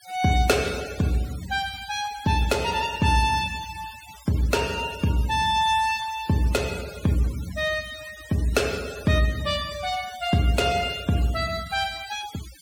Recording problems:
denoising artefacts; signal-to-artefact ratio 17 dB

